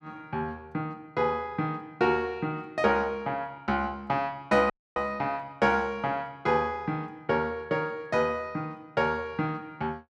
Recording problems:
audio cutting out; at 4.5 s

